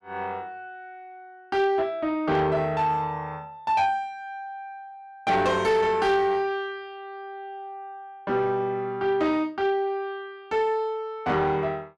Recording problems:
distorted audio; soft clipping, signal-to-distortion ratio 12 dB

